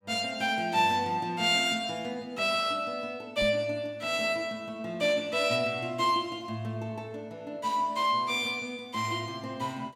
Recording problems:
microphone thump; at 3.5 s; peak -3 dB vs average level

